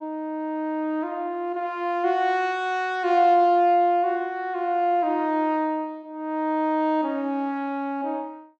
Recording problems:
none

